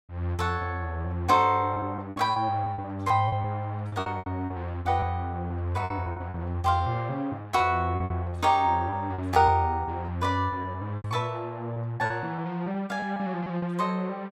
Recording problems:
packet loss; 11% of the sound replaced, filled with repeated pitch periods

